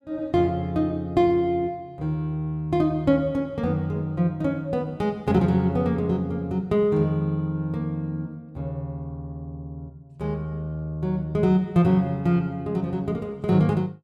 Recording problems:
none

